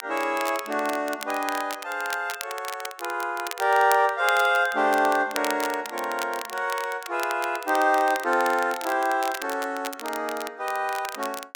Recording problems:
crackling; vinyl, SNR 12 dB

